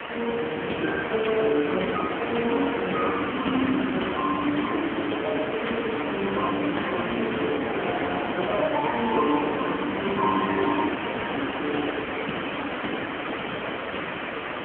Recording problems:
phone line; 190 Hz to 3.2 kHz, AMR-NB
background hiss; SNR 5 dB

